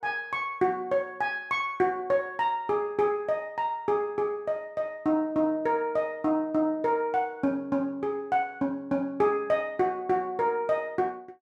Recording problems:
none

